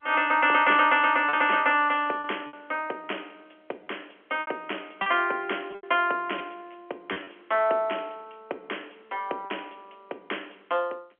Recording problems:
phone line; 280 Hz to 3.3 kHz, G.711
packet loss; 5% of the sound replaced, filled with repeated pitch periods

